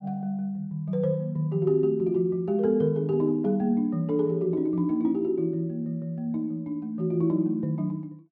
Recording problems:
none

